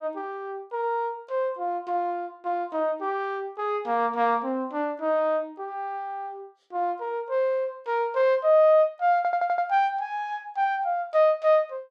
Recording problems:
stutter; at 9 s

